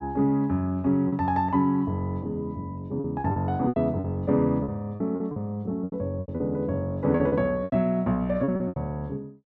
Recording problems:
packet loss; 10% of the sound replaced, filled with repeated pitch periods

